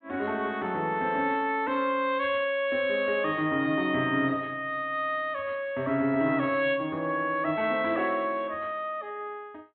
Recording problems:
treble cut off; nothing above 4 kHz

